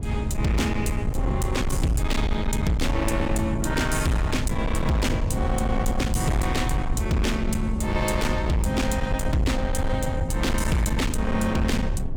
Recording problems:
distorted audio; hard clipping, signal-to-distortion ratio 8 dB
low-frequency rumble; below 130 Hz, SNR 2 dB

